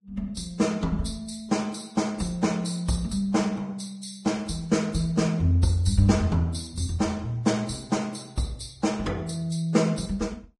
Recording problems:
codec artefacts; Vorbis, log-spectral distance 3 dB, nothing above 10.1 kHz

